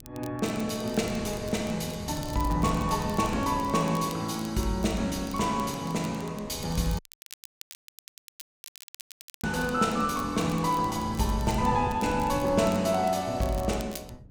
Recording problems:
wind on the microphone; below 180 Hz, SNR 13 dB
crackle; vinyl, SNR 19 dB
audio cutting out; at 7 s for 2.5 s

